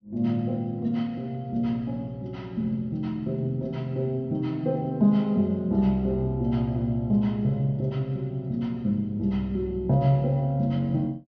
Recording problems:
treble missing; nothing above 6.3 kHz

